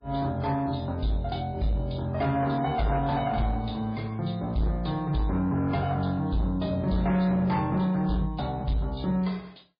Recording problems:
codec artefacts; MP3, log-spectral distance 3 dB, nothing above 4.5 kHz
distortion; soft clipping, signal-to-distortion ratio 12 dB

